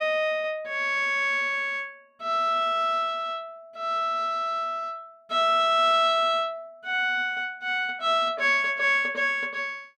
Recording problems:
none

